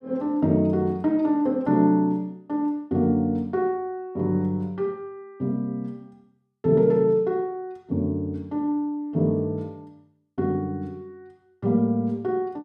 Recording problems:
none

